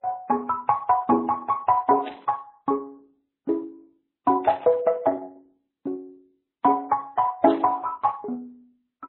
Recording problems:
codec artefacts; Opus, then MP3, log-spectral distance 2 dB
static burst; at 2 s, at 4.5 s and at 7.5 s; peak -12 dB vs average level

